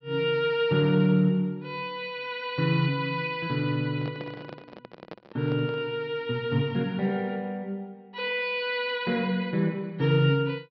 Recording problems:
treble missing; nothing above 5.5 kHz
handling noise; from 4 to 6 s; peak -9 dB vs average level

